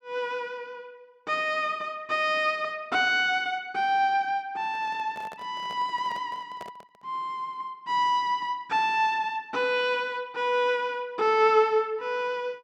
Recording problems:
handling noise; from 4.5 to 7 s; peak -12 dB vs average level

